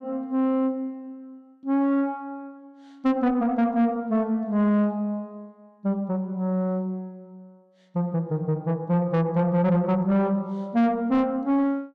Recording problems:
distortion; soft clipping, signal-to-distortion ratio 10 dB

